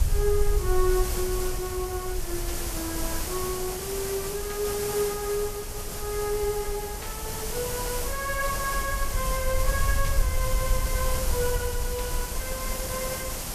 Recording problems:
background hiss; SNR 2 dB
low-frequency rumble; below 56 Hz, SNR 3 dB
burst of static; 5 times, first at 2.5 s; peak -5 dB vs average level

